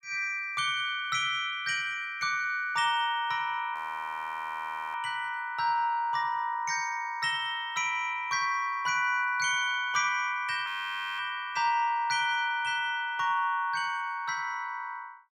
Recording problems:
frozen audio; at 4 s for 1 s and at 11 s for 0.5 s

